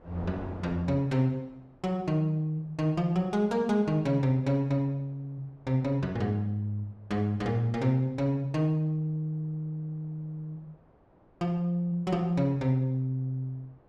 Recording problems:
wind on the microphone; below 710 Hz, SNR 24 dB

